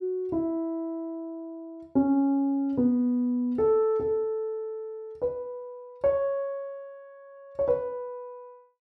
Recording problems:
none

